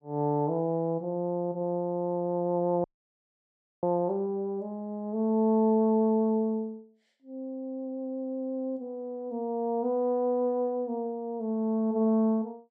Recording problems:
audio cutting out; at 3 s for 1 s

